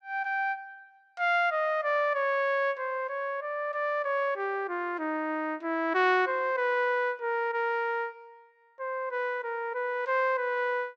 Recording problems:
none

